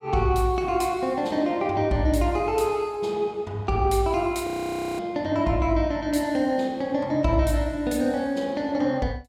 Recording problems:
audio freezing; at 4.5 s for 0.5 s

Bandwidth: 16.5 kHz